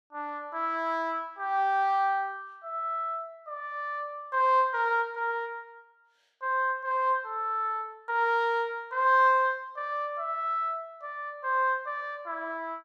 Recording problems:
none

